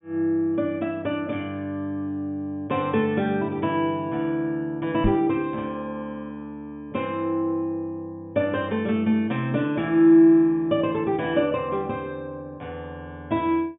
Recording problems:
low-pass filter; nothing above 3.7 kHz
microphone bump; at 5 s; peak +4 dB vs average level

